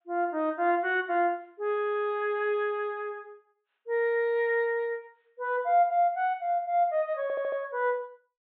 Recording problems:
treble cut off; nothing above 4 kHz
stutter; at 7 s

